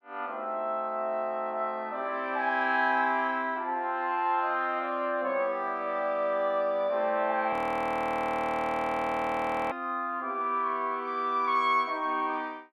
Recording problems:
frozen audio; at 7.5 s for 2 s

